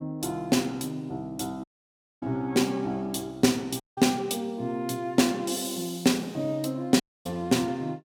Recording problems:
audio cutting out; at 1.5 s for 0.5 s, at 4 s and at 7 s

